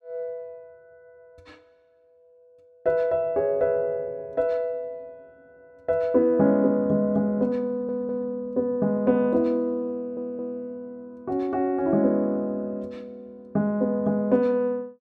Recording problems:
audio stuttering; at 7.5 s and at 10 s

